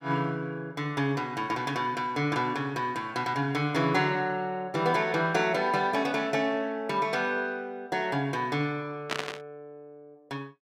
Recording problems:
burst of static; at 9 s; peak +2 dB vs average level

